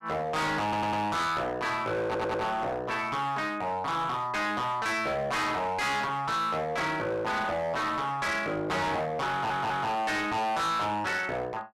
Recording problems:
distortion; hard clipping, uneven, signal-to-distortion ratio 7 dB
stutter; at 0.5 s, at 2 s and at 9.5 s

